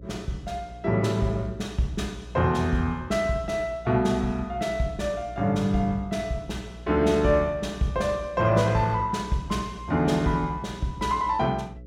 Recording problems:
mains hum; 60 Hz, harmonics up to 540 Hz, SNR 19 dB

